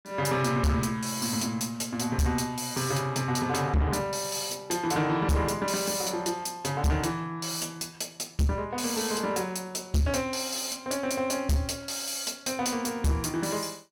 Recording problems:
distorted audio; soft clipping, signal-to-distortion ratio 7 dB

